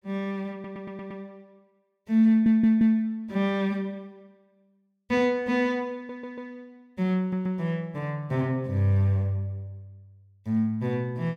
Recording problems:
stutter; 4 times, first at 0.5 s

